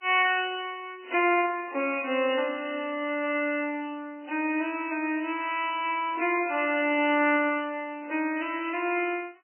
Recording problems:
lossy compression; MP3, log-spectral distance 5 dB, nothing above 2.4 kHz

